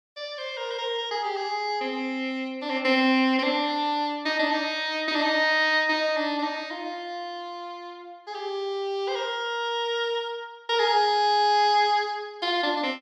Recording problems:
none

